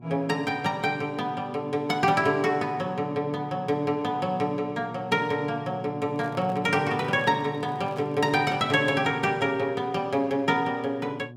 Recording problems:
hum; 60 Hz, harmonics up to 720 Hz, SNR 18 dB
handling noise; from 6 to 9 s; peak -11 dB vs average level

